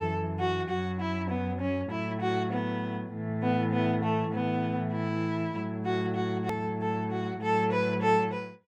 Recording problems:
click at an edit; at 6.5 s

